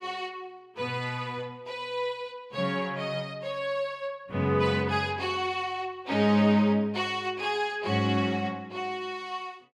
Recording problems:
none

